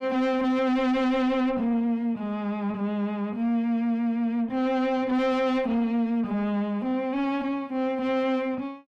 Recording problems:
distortion; soft clipping, signal-to-distortion ratio 6 dB

